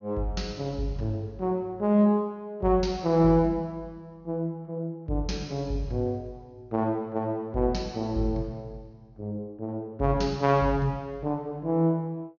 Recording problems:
low-pass filter; nothing above 6.8 kHz

